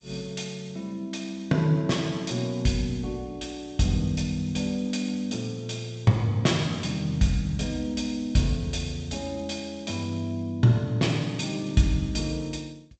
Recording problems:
lossy compression; G.722, log-spectral distance 3 dB, nothing above 7.8 kHz

